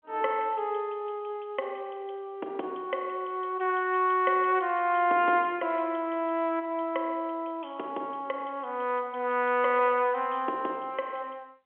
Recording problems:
telephone audio; 280 Hz to 3.4 kHz, G.711

